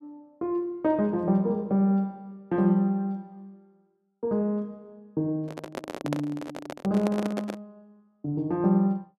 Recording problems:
handling noise; from 5.5 to 7.5 s; peak 0 dB vs average level

